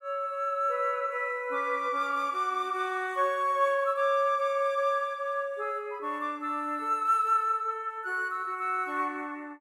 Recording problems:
none

